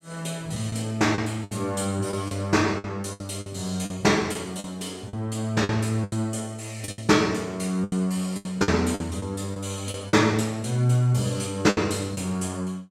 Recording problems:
packet loss; 9% of the sound replaced, filled with the last packet

